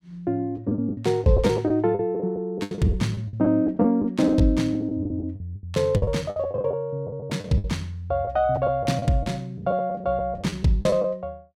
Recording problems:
packet loss; 14% of the sound replaced, filled with the last packet

